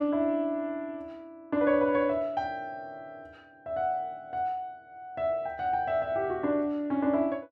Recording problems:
none

